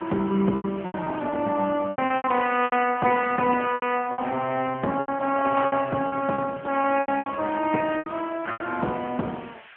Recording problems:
phone line; 220 Hz to 3.1 kHz, AMR-NB
hiss; SNR 23 dB
lost packets; 13% of the sound replaced, filled with repeated pitch periods

